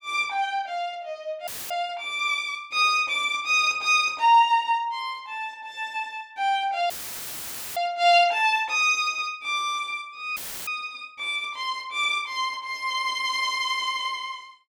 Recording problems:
dropout; at 1.5 s, at 7 s for 1 s and at 10 s; filled with static

